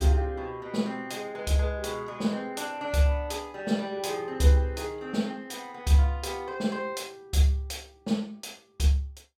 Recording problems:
none

